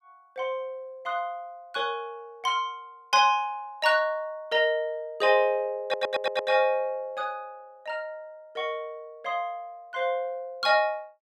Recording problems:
stutter; at 6 s

